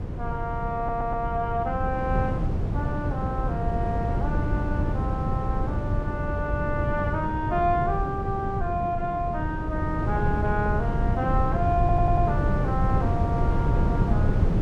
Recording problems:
wind on the microphone; below 170 Hz, SNR -2 dB
audio stuttering; at 1 s and at 12 s

